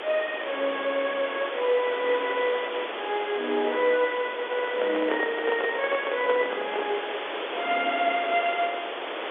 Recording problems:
phone line; 320 Hz to 3.9 kHz, G.711
hiss; SNR 6 dB
handling noise; from 4.5 to 7 s; peak +2 dB vs average level

